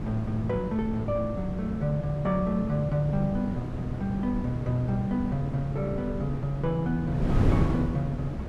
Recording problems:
wind on the microphone; below 270 Hz, SNR 4 dB

